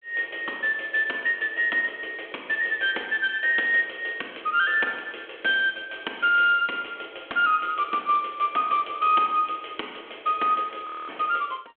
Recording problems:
telephone audio; 280 Hz to 3.4 kHz, G.726
frozen audio; at 11 s

